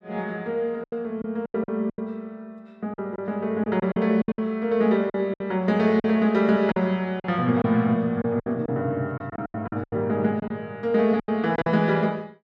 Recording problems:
lost packets; 11% of the sound replaced, filled with silence

